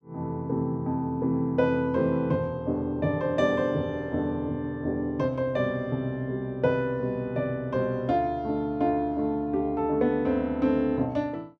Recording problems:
none

